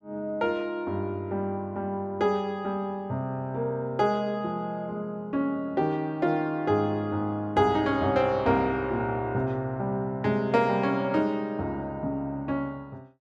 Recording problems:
none

